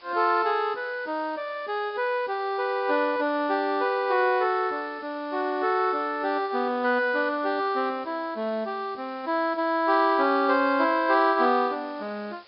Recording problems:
treble cut off; nothing above 5.2 kHz
background hiss; slope -1 dB per octave, SNR 27 dB

